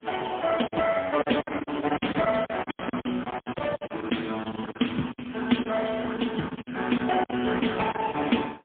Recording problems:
telephone audio; 170 Hz to 3.4 kHz, AMR-NB, then MP3
lost packets; 14% of the sound replaced, filled with silence

